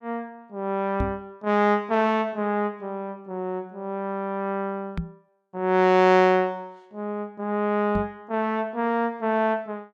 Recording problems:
microphone thump; at 1 s, at 5 s and at 8 s; peak 0 dB vs average level

